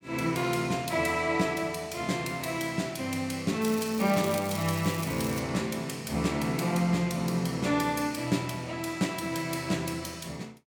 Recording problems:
crackle; from 3.5 to 5.5 s; loose cable, SNR 12 dB

